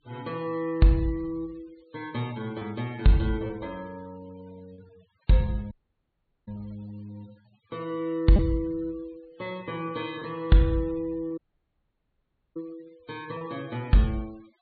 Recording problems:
low-pass filter; nothing above 4.5 kHz
denoising artefacts; signal-to-artefact ratio 26 dB
packet loss; 1.6% of the sound replaced, filled with repeated pitch periods
dropout; at 5.5 s for 1 s and at 11 s for 1 s

